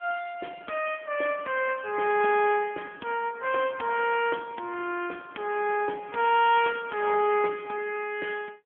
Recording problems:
telephone audio; 300 Hz to 3.3 kHz, AMR-NB

